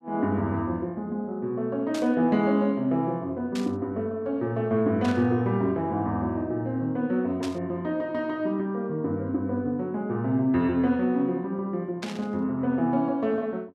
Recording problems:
burst of static; 5 times, first at 2 s; peak -5 dB vs average level

